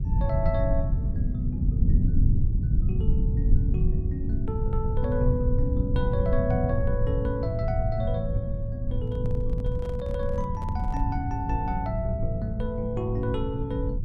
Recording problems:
rumble; below 100 Hz, SNR -2 dB
microphone handling noise; from 9 to 11 s; peak -11 dB vs average level

